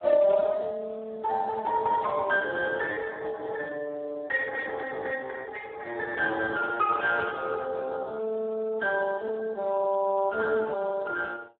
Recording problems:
phone line; 280 Hz to 3.8 kHz, Speex

